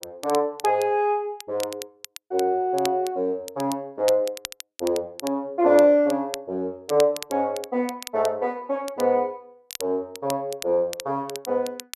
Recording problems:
crackling; vinyl, SNR 15 dB

